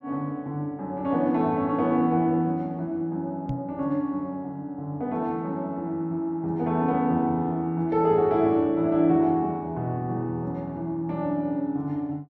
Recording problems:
microphone bump; at 3.5 s; peak -2 dB vs average level

